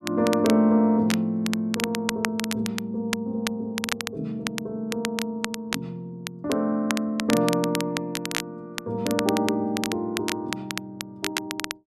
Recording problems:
crackling; vinyl, SNR 7 dB

